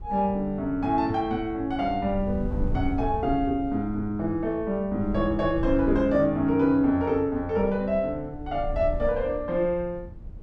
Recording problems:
wind on the microphone; below 96 Hz, SNR 12 dB

